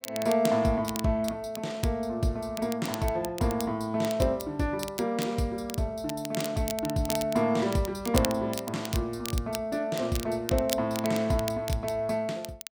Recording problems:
crackle; vinyl, SNR 11 dB

